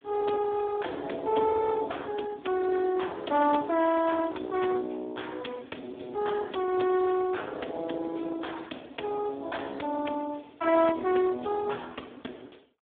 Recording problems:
phone line; 190 Hz to 3.5 kHz, Speex

